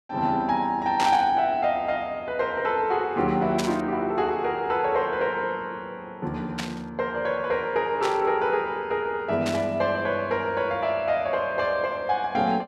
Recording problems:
static burst; 5 times, first at 1 s; peak -1 dB vs average level

